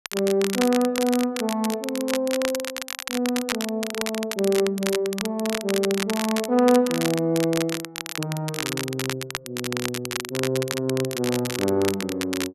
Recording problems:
crackle; vinyl, SNR 6 dB

